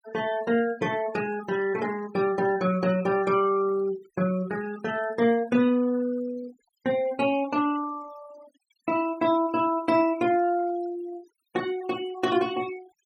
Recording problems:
denoising artefacts; signal-to-artefact ratio 19 dB

